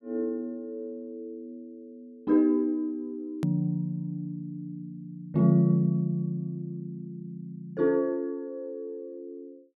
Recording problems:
click at an edit; at 3.5 s

